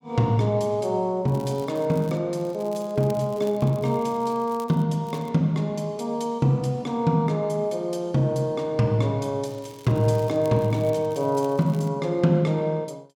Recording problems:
crackle; 4 times, first at 1.5 s; loose cable, SNR 26 dB

